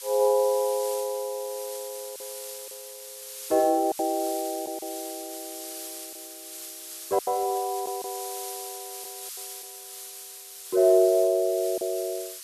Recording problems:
background hiss; SNR 11 dB
lost packets; 4% of the sound replaced, filled with silence

